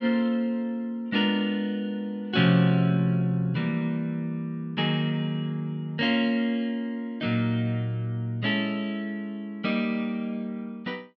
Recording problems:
none

